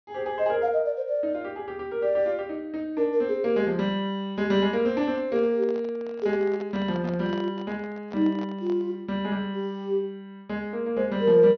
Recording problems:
treble missing; nothing above 6.2 kHz
microphone handling noise; from 5 to 9 s; peak -10 dB vs average level

